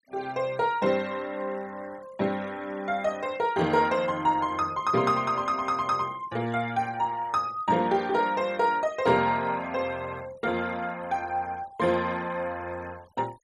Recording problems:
denoising artefacts; signal-to-artefact ratio 23 dB

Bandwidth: 12.5 kHz